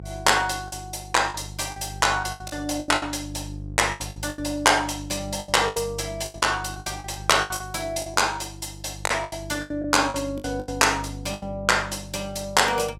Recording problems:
electrical hum; 50 Hz, harmonics up to 550 Hz, SNR 15 dB
lost packets; 13% of the sound replaced, filled with the last packet

